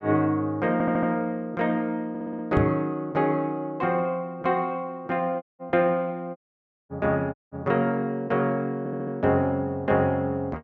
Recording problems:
audio stuttering; at 0.5 s, at 2 s and at 9 s
microphone thump; at 2.5 s; peak +5 dB vs average level
dropout; at 5.5 s, at 6.5 s for 0.5 s and at 7.5 s

